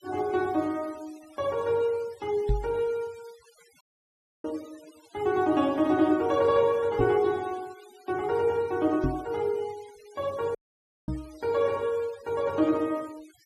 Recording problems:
denoising artefacts; signal-to-artefact ratio 24 dB
microphone bump; 4 times, first at 2.5 s; peak +3 dB vs average level
audio cutting out; at 4 s for 0.5 s and at 11 s for 0.5 s

